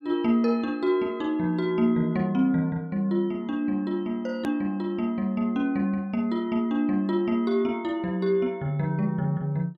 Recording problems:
edit click; at 4.5 s

